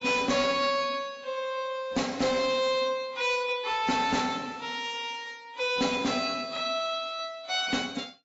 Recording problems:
lossy compression; AAC, log-spectral distance 4 dB, nothing above 7.6 kHz
distortion; hard clipping, signal-to-distortion ratio 12 dB

